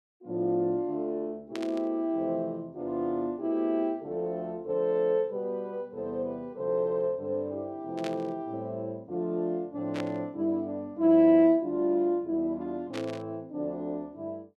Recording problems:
burst of static; 4 times, first at 1.5 s; peak -6 dB vs average level

